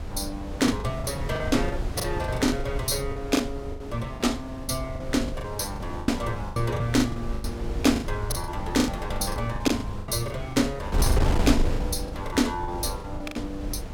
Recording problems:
wind on the microphone; below 150 Hz, SNR 5 dB
packet loss; 16% of the sound replaced, filled with the last packet

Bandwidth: 17 kHz